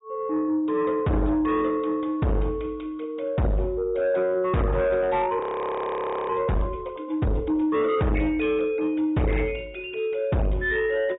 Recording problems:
treble missing; nothing above 3.8 kHz
lossy compression; AAC, log-spectral distance 2 dB
distortion; soft clipping, signal-to-distortion ratio 6 dB
audio freezing; at 5.5 s for 1 s

